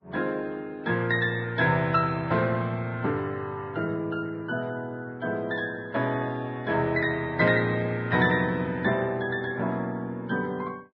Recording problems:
lossy compression; Vorbis, log-spectral distance 2 dB

